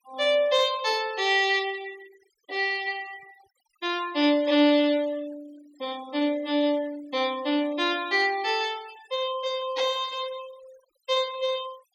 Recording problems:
denoising artefacts; signal-to-artefact ratio 22 dB

